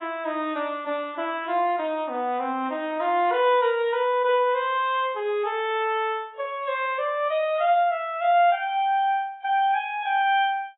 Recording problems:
lossy codec; AAC, log-spectral distance 2 dB, nothing above 3.2 kHz

